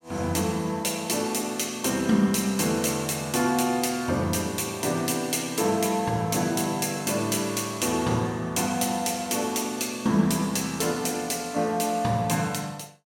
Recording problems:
none

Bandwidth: 17.5 kHz